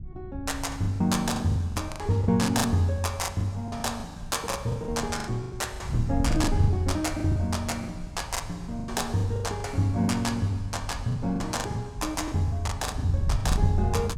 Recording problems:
wind noise; below 100 Hz, SNR 8 dB
packet loss; 15% of the sound replaced, filled with the last packet

